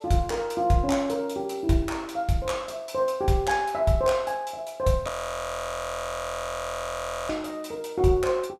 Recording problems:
frozen audio; at 5 s for 2 s

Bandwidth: 15 kHz